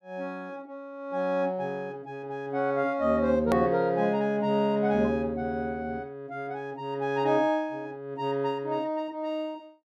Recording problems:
edit click; at 3.5 s

